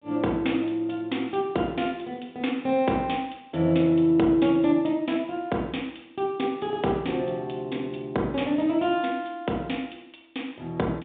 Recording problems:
telephone audio; 170 Hz to 3.7 kHz, G.726

